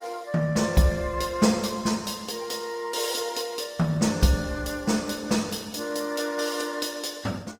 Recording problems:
lossy codec; Opus, log-spectral distance 5 dB, nothing above 18.5 kHz

